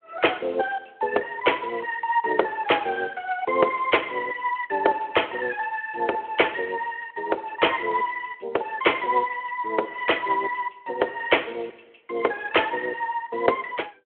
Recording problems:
telephone audio; 340 Hz to 3.4 kHz, Speex

